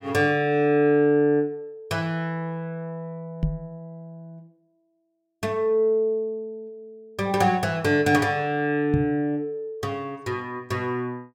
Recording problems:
microphone thump; at 3.5 s and at 9 s; peak +3 dB vs average level

